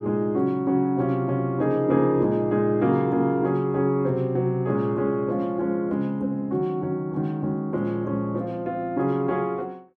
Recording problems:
none

